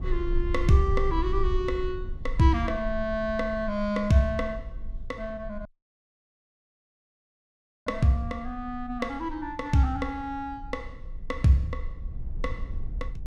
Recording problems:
low-frequency rumble; below 54 Hz, strongest tone 22 Hz, SNR 9 dB
audio cutting out; at 5.5 s for 2 s

